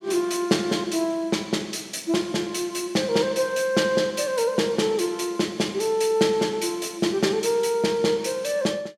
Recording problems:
none

